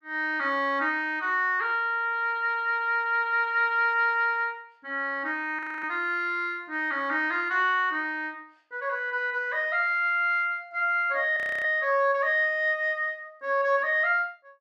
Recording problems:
audio freezing; at 5.5 s and at 11 s

